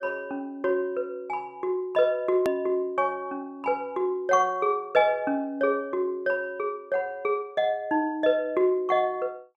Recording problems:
hard cut with a click; at 2.5 s

